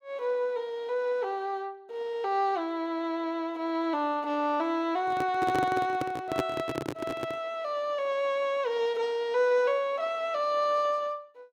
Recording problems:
microphone handling noise; from 5 to 7.5 s; peak +4 dB vs average level

